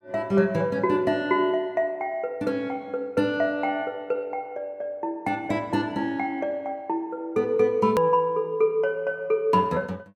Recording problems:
click at an edit; at 8 s

